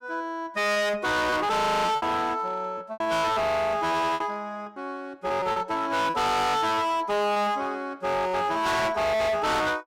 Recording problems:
distortion; hard clipping, signal-to-distortion ratio 6 dB
lost packets; 5% of the sound replaced, filled with repeated pitch periods

